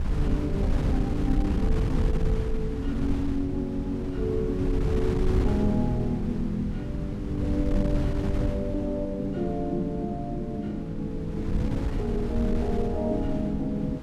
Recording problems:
wind noise; below 110 Hz, SNR 1 dB

